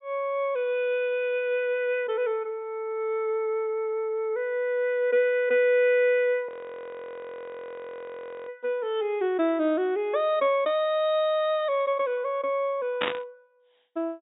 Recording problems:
treble cut off; nothing above 3.8 kHz
audio freezing; at 6.5 s for 2 s
burst of static; at 13 s; peak +2 dB vs average level

